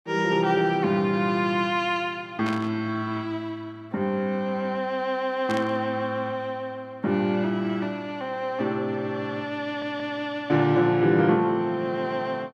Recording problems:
burst of static; at 2.5 s and at 5.5 s; peak -6 dB vs average level
stutter; at 9.5 s

